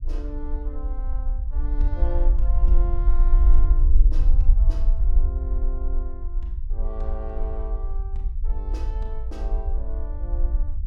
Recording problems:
low-frequency rumble; below 46 Hz, SNR -14 dB

